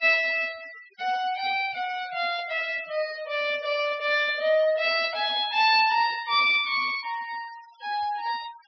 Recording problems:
low-pass filter; nothing above 5.5 kHz
denoising artefacts; signal-to-artefact ratio 20 dB

